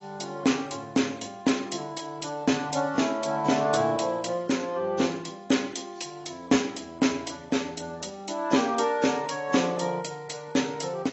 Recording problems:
codec artefacts; AAC, log-spectral distance 5 dB, nothing above 7.8 kHz

